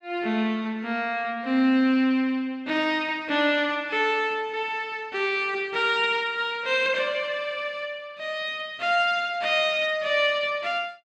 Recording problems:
none

